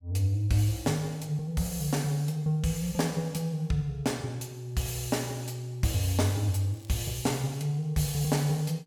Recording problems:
crackle; at 6.5 s; loose cable, SNR 28 dB

